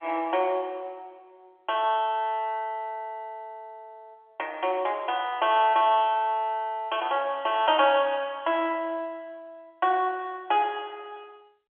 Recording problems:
telephone audio; 280 Hz to 3.4 kHz, G.711

